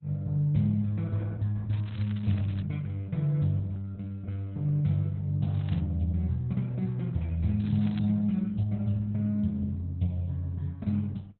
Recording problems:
codec artefacts; Opus, log-spectral distance 2 dB, nothing above 4 kHz
crackling; at 1.5 s, at 5.5 s and at 7.5 s; loose cable, SNR 24 dB

